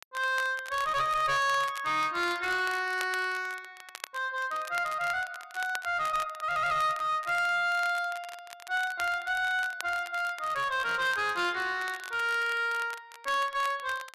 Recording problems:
distorted audio; hard clipping, uneven, signal-to-distortion ratio 9 dB
crackling; vinyl, SNR 17 dB

